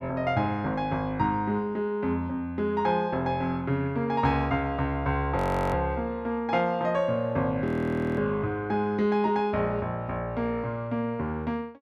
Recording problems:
audio freezing; at 5.5 s and at 7.5 s for 0.5 s

